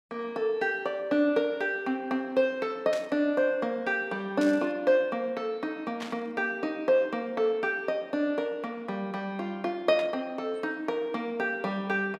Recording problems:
burst of static; 4 times, first at 3 s; peak -6 dB vs average level

